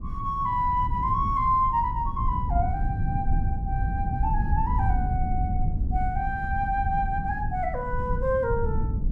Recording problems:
rumble; below 100 Hz, SNR 2 dB

